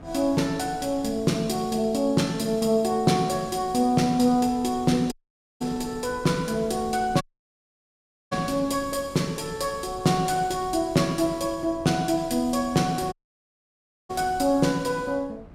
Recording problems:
wind noise; below 340 Hz, SNR 21 dB
dropout; at 5 s, at 7 s for 1 s and at 13 s for 1 s

